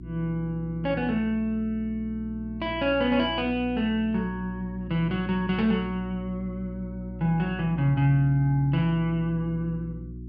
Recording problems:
hum; 60 Hz, harmonics up to 360 Hz, SNR 13 dB

